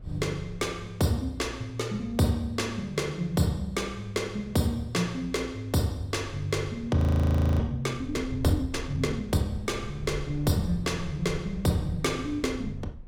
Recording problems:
wind on the microphone; below 100 Hz, SNR 16 dB
frozen audio; at 7 s for 0.5 s

